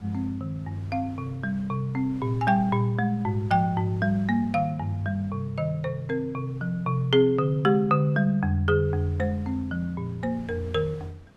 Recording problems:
wind on the microphone; below 490 Hz, SNR 24 dB

